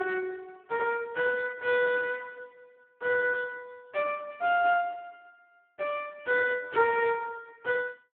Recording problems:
telephone audio; 260 Hz to 3.7 kHz, Speex

